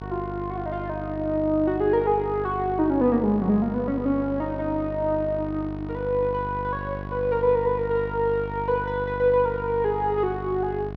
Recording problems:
hum; 50 Hz, harmonics up to 1.4 kHz, SNR 10 dB

